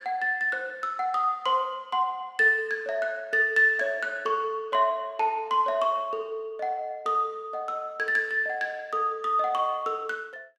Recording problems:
none

